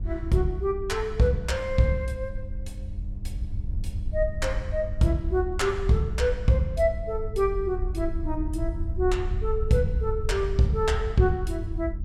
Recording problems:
hum; 50 Hz, harmonics up to 600 Hz, SNR 17 dB
wind on the microphone; below 72 Hz, SNR 7 dB

